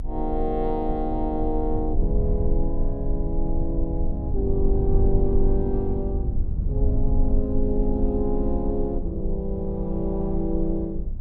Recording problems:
rumble; below 62 Hz, strongest tone 22 Hz, SNR 0 dB

